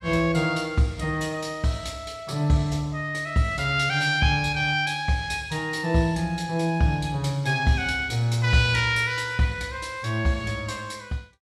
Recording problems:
none

